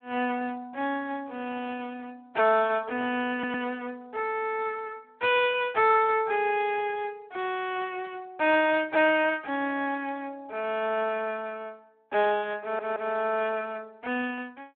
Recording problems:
telephone audio; 260 Hz to 3.5 kHz, Speex
audio stuttering; at 3.5 s and at 13 s

